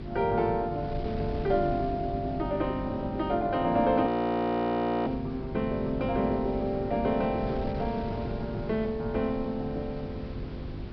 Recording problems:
treble missing; nothing above 5.5 kHz
hum; 50 Hz, harmonics up to 400 Hz, SNR 11 dB
wind noise; below 210 Hz, SNR 12 dB
audio freezing; at 4 s for 1 s

